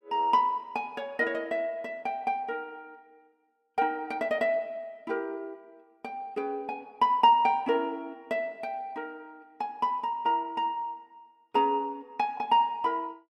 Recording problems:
none

